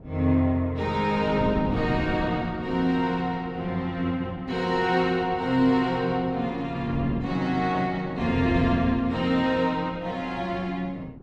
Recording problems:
wind noise; below 280 Hz, SNR 11 dB

